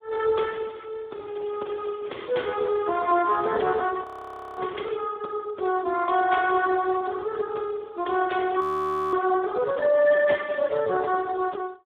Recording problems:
phone line; 260 Hz to 2 kHz, Speex
crackling; from 1.5 to 2.5 s and from 2.5 to 5 s; loose cable, SNR 27 dB
audio freezing; at 4 s for 0.5 s and at 8.5 s for 0.5 s

